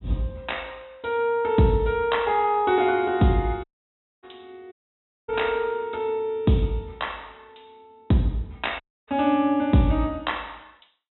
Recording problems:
treble cut off; nothing above 3.8 kHz
dropout; at 3.5 s for 0.5 s, at 4.5 s for 0.5 s and at 9 s

